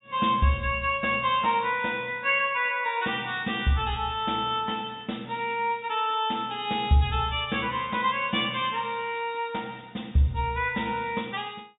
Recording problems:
treble cut off; nothing above 4 kHz

